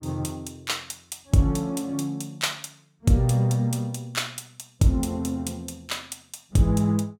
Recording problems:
none

